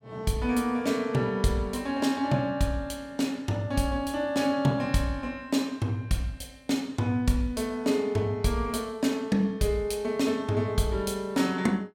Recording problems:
none

